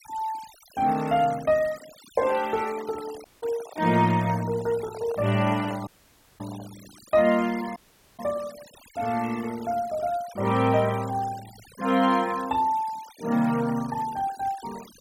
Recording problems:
noise reduction artefacts; signal-to-artefact ratio 19 dB
microphone handling noise; from 2.5 to 7 s; peak -11 dB vs average level
audio cutting out; at 3.5 s, at 6 s for 0.5 s and at 8 s

